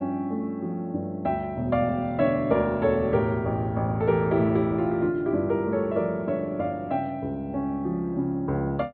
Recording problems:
low-pass filter; nothing above 4.4 kHz

